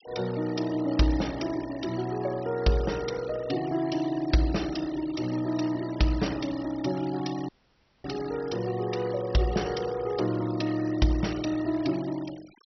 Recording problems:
low-pass filter; nothing above 5.8 kHz
noise reduction artefacts; signal-to-artefact ratio 17 dB
audio cutting out; at 7.5 s for 0.5 s

